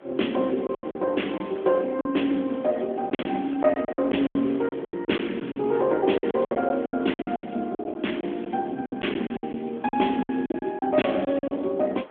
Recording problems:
phone line; 190 Hz to 3.4 kHz, AMR-NB
wind noise; below 1.3 kHz, SNR 23 dB
lost packets; 14% of the sound replaced, filled with silence

